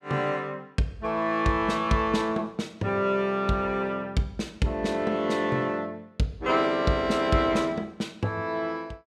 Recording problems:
none

